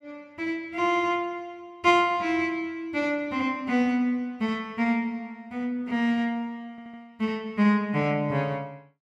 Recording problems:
audio stuttering; at 6.5 s

